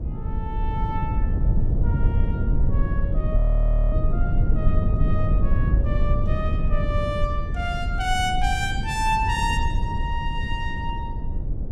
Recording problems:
rumble; below 92 Hz, SNR -4 dB
audio freezing; at 3.5 s for 0.5 s

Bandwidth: 16 kHz